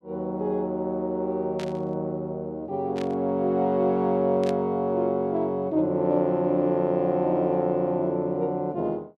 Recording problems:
static burst; at 1.5 s, at 3 s and at 4.5 s; peak -10 dB vs average level

